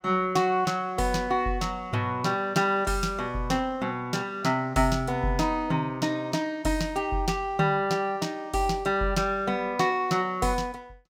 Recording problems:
none

